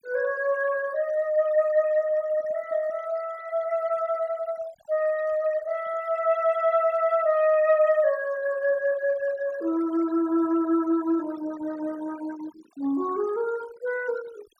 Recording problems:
noise reduction artefacts; signal-to-artefact ratio 21 dB

